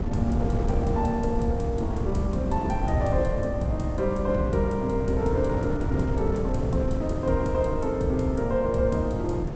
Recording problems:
treble missing; nothing above 8 kHz
wind on the microphone; below 200 Hz, SNR 4 dB

